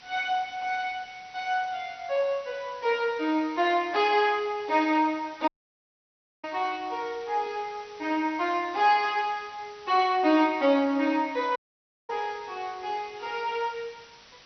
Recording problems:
codec artefacts; MP2, log-spectral distance 6 dB, nothing above 5 kHz
hiss; slope 0 dB per octave, SNR 23 dB
audio cutting out; at 5.5 s for 1 s and at 12 s for 0.5 s

